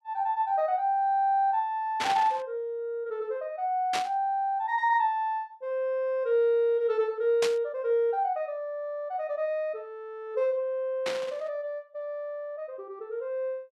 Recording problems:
burst of static; 4 times, first at 2 s; peak +1 dB vs average level

